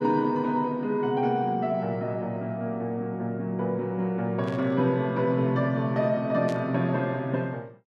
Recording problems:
burst of static; at 4.5 s and at 6.5 s; peak -11 dB vs average level

